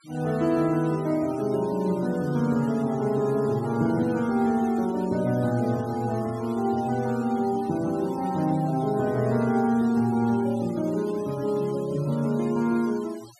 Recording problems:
noise reduction artefacts; signal-to-artefact ratio 22 dB

